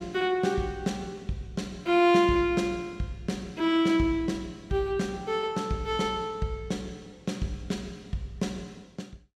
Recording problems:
none

